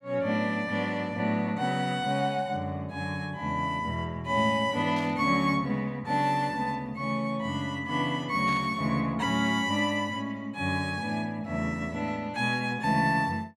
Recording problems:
burst of static; at 5 s and at 8.5 s; peak -11 dB vs average level

